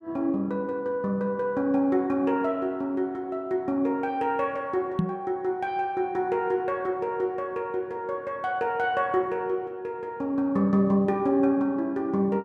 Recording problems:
microphone thump; at 5 s; peak +5 dB vs average level

